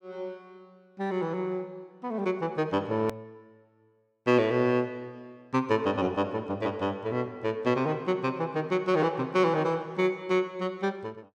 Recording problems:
hard cut with a click; at 3 s

